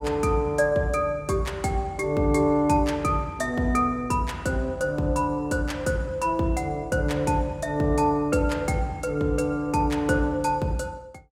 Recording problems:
none

